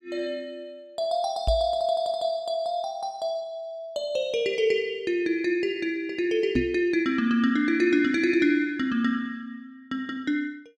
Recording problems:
microphone bump; at 1.5 s and at 6.5 s; peak +4 dB vs average level

